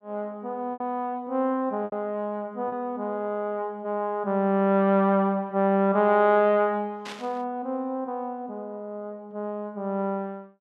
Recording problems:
lost packets; 1.9% of the sound replaced, filled with repeated pitch periods
static burst; at 7 s; peak -8 dB vs average level

